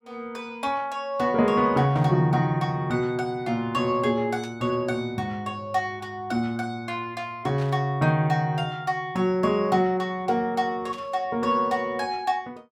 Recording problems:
static burst; 4 times, first at 2 s; peak -14 dB vs average level

